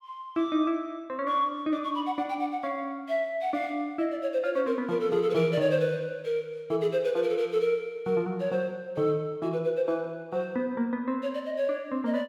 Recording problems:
none

